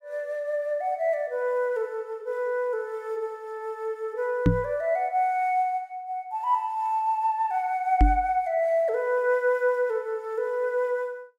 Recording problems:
microphone bump; at 4.5 s and at 8 s; peak +9 dB vs average level

